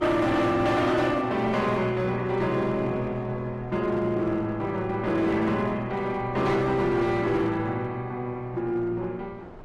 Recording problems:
codec artefacts; Opus, log-spectral distance 2 dB, nothing above 13.1 kHz
distortion; hard clipping, uneven, signal-to-distortion ratio 10 dB
wind noise; below 710 Hz, SNR 20 dB

